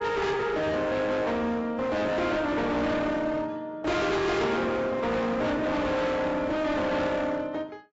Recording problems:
codec artefacts; AAC, log-spectral distance 2 dB, nothing above 7.6 kHz
distorted audio; hard clipping, signal-to-distortion ratio 6 dB

